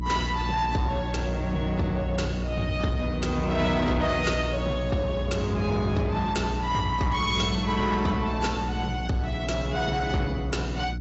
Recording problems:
lossy compression; AAC, log-spectral distance 3 dB, nothing above 7.6 kHz
distortion; soft clipping, signal-to-distortion ratio 12 dB
hum; 60 Hz, harmonics up to 360 Hz, SNR 5 dB

